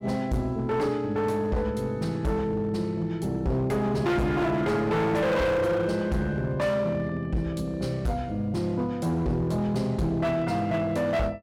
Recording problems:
distorted audio; hard clipping, signal-to-distortion ratio 8 dB

